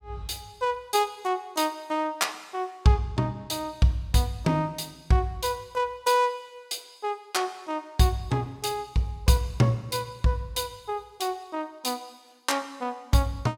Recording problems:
none

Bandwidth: 18 kHz